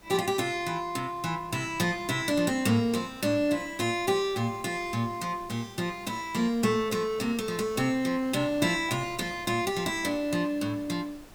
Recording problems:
background hiss; slope 0 dB per octave, SNR 27 dB
wind noise; below 930 Hz, SNR 24 dB

